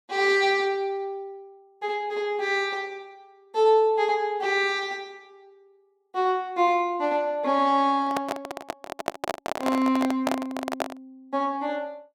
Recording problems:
microphone handling noise; from 8 to 11 s; peak +3 dB vs average level

